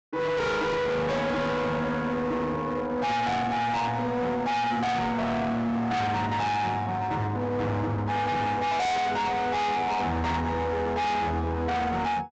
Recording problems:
treble missing; nothing above 8 kHz
distortion; hard clipping, signal-to-distortion ratio 6 dB

